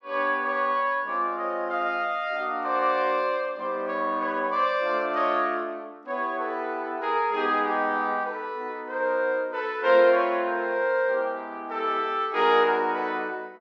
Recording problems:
none

